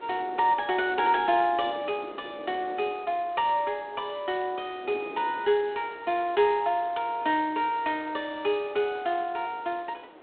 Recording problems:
telephone audio; 260 Hz to 4 kHz, G.726
hiss; SNR 24 dB
wind noise; below 590 Hz, SNR 20 dB

